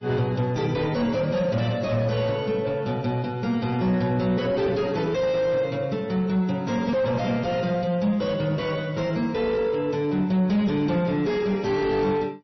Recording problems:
lossy compression; MP3, log-spectral distance 2 dB, nothing above 5.8 kHz
distorted audio; soft clipping, signal-to-distortion ratio 7 dB

